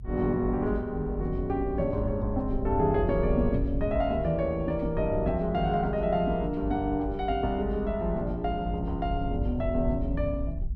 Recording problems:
low-frequency rumble; below 80 Hz, SNR 7 dB

